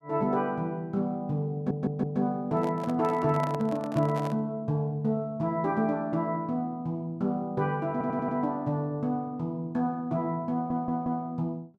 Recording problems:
stutter; at 1.5 s, at 8 s and at 11 s
handling noise; from 2.5 to 4.5 s; peak -4 dB vs average level

